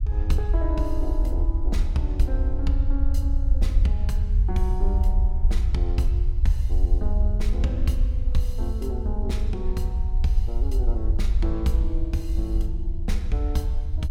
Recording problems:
rumble; below 62 Hz, SNR -6 dB

